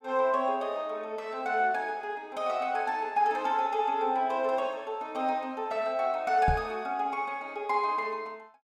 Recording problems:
knock on the microphone; at 6.5 s; peak +3 dB vs average level

